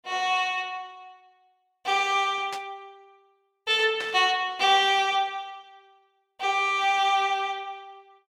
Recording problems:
static burst; at 2.5 s and at 4 s; peak -8 dB vs average level

